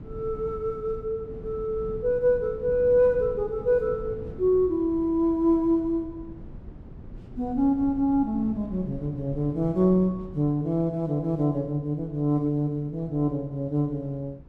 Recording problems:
wind noise; below 210 Hz, SNR 17 dB

